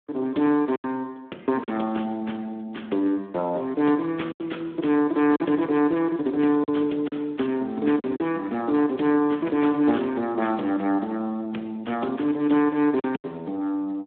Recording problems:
telephone audio; 240 Hz to 3.6 kHz, Speex
packet loss; 4% of the sound replaced, filled with silence

